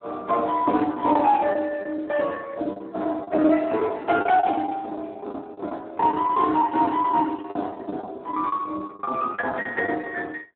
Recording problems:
phone line; 220 Hz to 2.8 kHz, Speex
packet loss; 12% of the sound replaced, filled with the last packet

